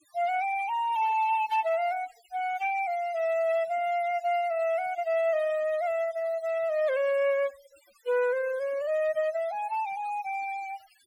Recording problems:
noise reduction artefacts; signal-to-artefact ratio 20 dB

